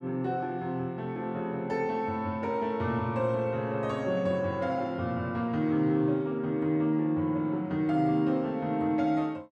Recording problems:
none

